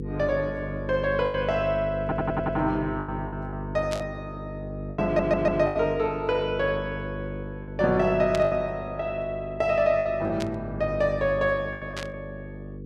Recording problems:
hum; 50 Hz, harmonics up to 500 Hz, SNR 9 dB
packet loss; 6% of the sound replaced, filled with the last packet
audio stuttering; at 2 s and at 5 s
static burst; 4 times, first at 4 s; peak -3 dB vs average level

